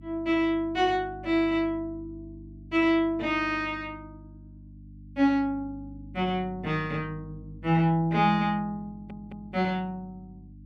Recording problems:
electrical hum; 50 Hz, harmonics up to 300 Hz, SNR 19 dB
stutter; at 9 s

